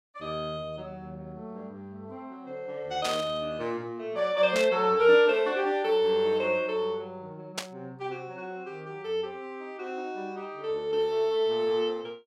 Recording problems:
burst of static; at 3 s, at 4.5 s and at 7.5 s; peak 0 dB vs average level

